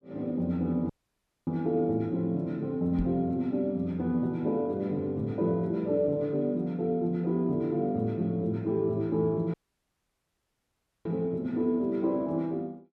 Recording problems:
audio cutting out; at 1 s for 0.5 s and at 9.5 s for 1.5 s
microphone thump; at 3 s; peak -1 dB vs average level

